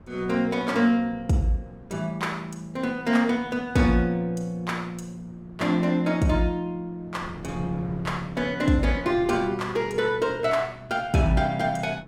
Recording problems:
wind on the microphone; below 350 Hz, SNR 20 dB

